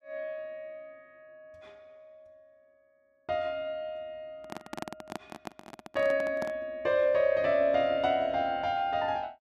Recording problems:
microphone handling noise; from 4.5 to 6.5 s; peak -4 dB vs average level

